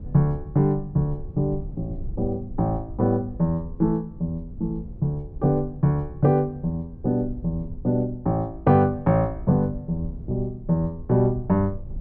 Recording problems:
low-frequency rumble; below 82 Hz, SNR 15 dB

